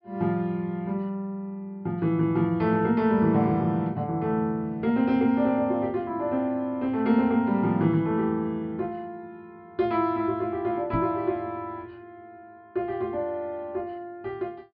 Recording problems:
treble missing; nothing above 5.5 kHz
microphone thump; at 11 s; peak +1 dB vs average level

